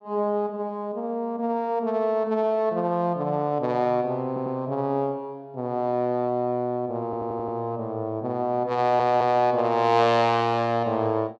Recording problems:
audio stuttering; at 4.5 s, at 7 s and at 9 s

